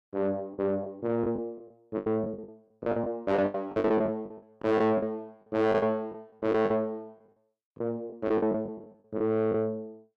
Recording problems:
distorted audio; soft clipping, signal-to-distortion ratio 7 dB
packet loss; 15% of the sound replaced, filled with the last packet

